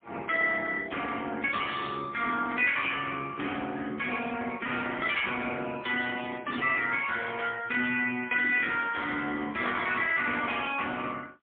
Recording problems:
telephone audio; 190 Hz to 3.5 kHz, AMR-NB, then MP3

